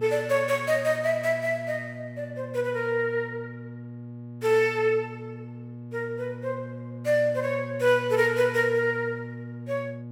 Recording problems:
electrical hum; 60 Hz, harmonics up to 840 Hz, SNR 13 dB

